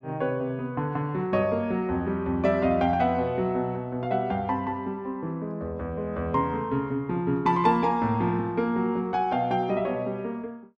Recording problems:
none

